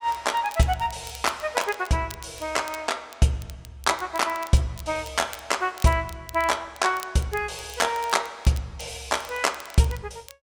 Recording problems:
crackling; vinyl, SNR 19 dB

